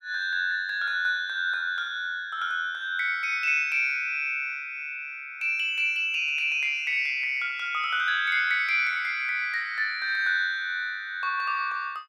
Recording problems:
none

